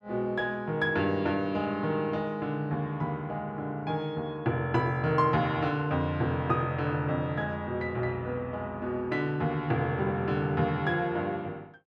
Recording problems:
none

